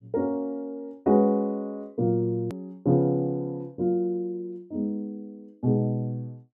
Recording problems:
click at an edit; at 2.5 s

